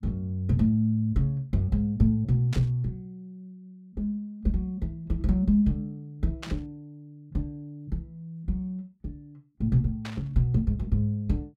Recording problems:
burst of static; at 2.5 s, at 6.5 s and at 10 s; peak -6 dB vs average level

